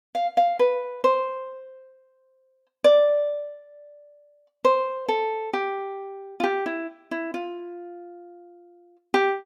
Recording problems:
none

